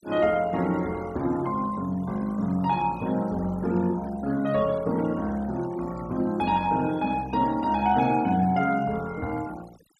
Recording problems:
noise reduction artefacts; signal-to-artefact ratio 21 dB

